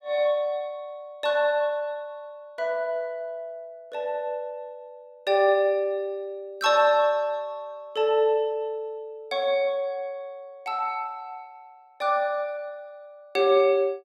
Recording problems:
none

